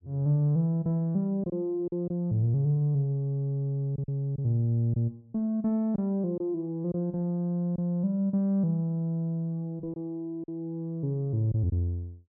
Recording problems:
packet loss; 3% of the sound replaced, filled with silence

